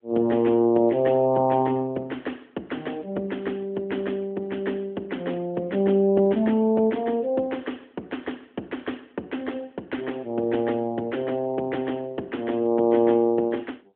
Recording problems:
telephone audio; 170 Hz to 3.4 kHz, AMR-NB

